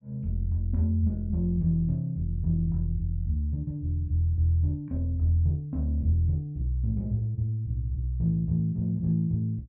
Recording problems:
none

